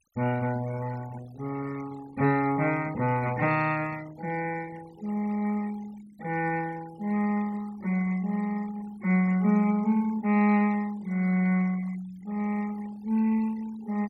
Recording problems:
denoising artefacts; signal-to-artefact ratio 20 dB

